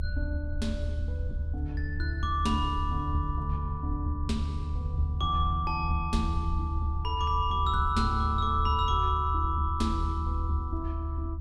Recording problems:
low-frequency rumble; below 78 Hz, strongest tone 76 Hz, SNR 1 dB

